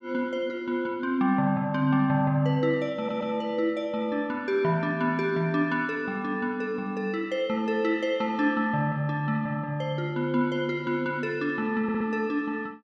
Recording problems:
stutter; at 3 s and at 12 s

